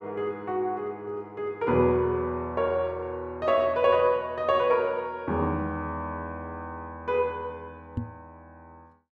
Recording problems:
microphone bump; at 8 s; peak 0 dB vs average level

